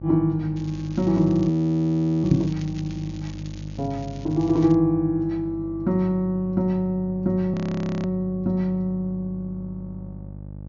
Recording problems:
low-pass filter; nothing above 6.9 kHz
hum; 50 Hz, harmonics up to 800 Hz, SNR 13 dB
crackle; from 0.5 to 5 s; loose cable, SNR 24 dB
frozen audio; at 1.5 s for 0.5 s and at 7.5 s
microphone bump; at 2.5 s; peak +8 dB vs average level

